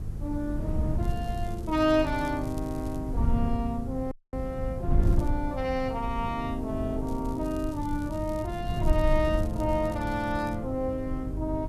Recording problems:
hum; 50 Hz, harmonics up to 350 Hz, SNR 11 dB
hiss; SNR 29 dB
wind noise; below 100 Hz, SNR 3 dB
crackling; from 1 to 3 s, at 5 s and from 7 to 11 s; loose cable, SNR 23 dB
dropout; at 4 s

